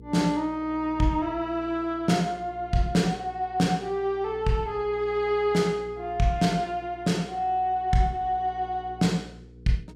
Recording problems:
electrical hum; 60 Hz, harmonics up to 480 Hz, SNR 21 dB

